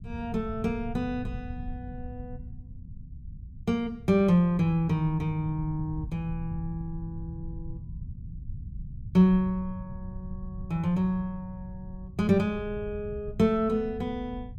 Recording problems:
rumble; below 120 Hz, SNR 13 dB

